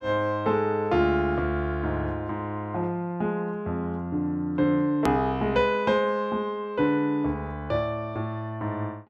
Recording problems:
click at an edit; at 5 s

